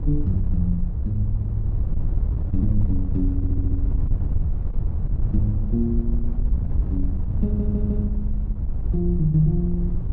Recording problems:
wind on the microphone; below 80 Hz, SNR -1 dB
stutter; at 3.5 s and at 7.5 s

